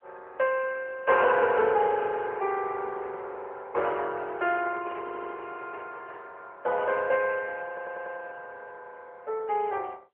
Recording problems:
telephone audio; 340 Hz to 3.1 kHz, AMR-NB
microphone handling noise; from 4.5 to 6.5 s; peak -11 dB vs average level
audio stuttering; at 5 s and at 7.5 s

